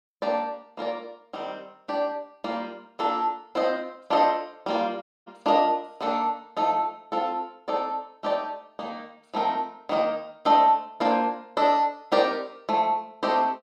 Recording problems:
dropout; at 5 s

